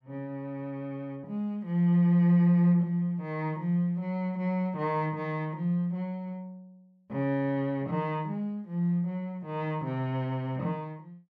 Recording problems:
none

